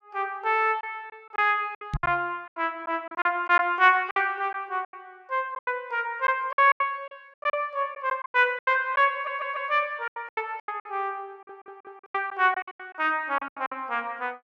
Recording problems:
lost packets; 14% of the sound replaced, filled with silence
knock on the microphone; at 2 s; peak 0 dB vs average level
stutter; at 9 s and at 11 s

